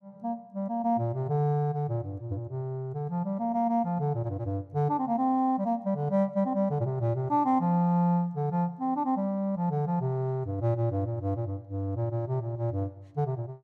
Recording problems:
none

